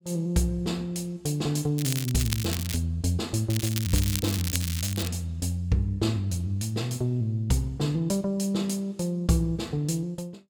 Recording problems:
crackle; at 2 s and from 3.5 to 5 s; loose cable, SNR 5 dB

